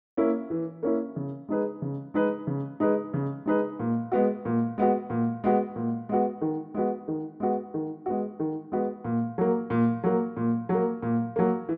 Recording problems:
none

